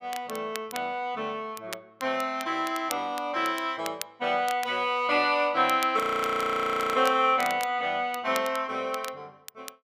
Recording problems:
crackling; vinyl, SNR 15 dB
frozen audio; at 6 s for 1 s

